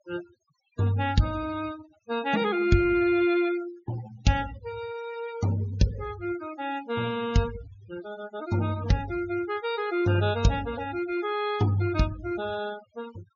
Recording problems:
treble missing; nothing above 6.9 kHz
denoising artefacts; signal-to-artefact ratio 16 dB

